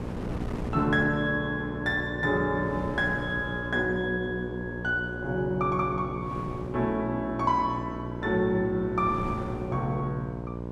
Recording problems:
hum; 60 Hz, harmonics up to 1.1 kHz, SNR 8 dB
wind noise; below 410 Hz, SNR 15 dB

